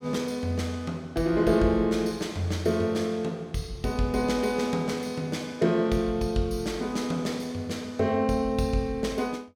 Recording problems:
none

